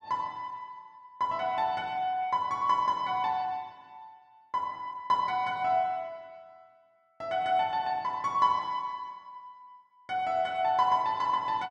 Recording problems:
none

